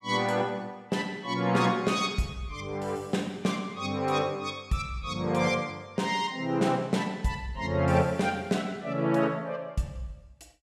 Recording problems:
none

